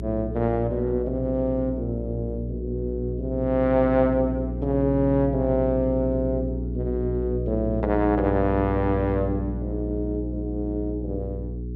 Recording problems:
electrical hum; 60 Hz, harmonics up to 420 Hz, SNR 6 dB

